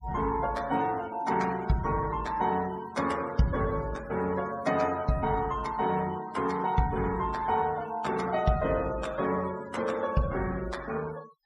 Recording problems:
denoising artefacts; signal-to-artefact ratio 17 dB

